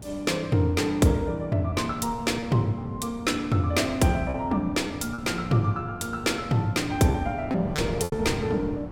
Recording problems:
wind on the microphone; below 300 Hz, SNR 12 dB
packet loss; 4% of the sound replaced, filled with repeated pitch periods

